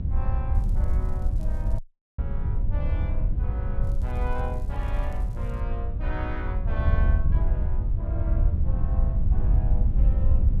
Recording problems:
electrical hum; 50 Hz, harmonics up to 1 kHz, SNR 5 dB
wind noise; below 74 Hz, SNR -13 dB
crackle; from 0.5 to 2 s and from 4 to 5.5 s; loose cable, SNR 22 dB
audio cutting out; at 2 s

